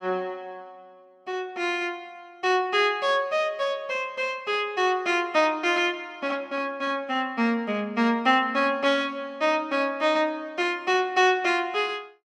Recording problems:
none

